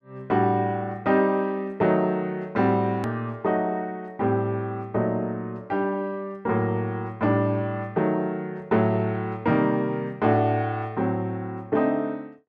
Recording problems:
click at an edit; at 3 s

